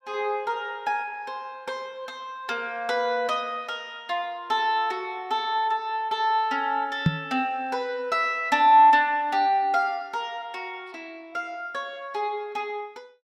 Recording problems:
microphone bump; at 7 s; peak +8 dB vs average level

